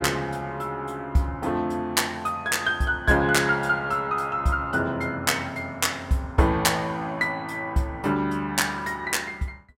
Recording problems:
none

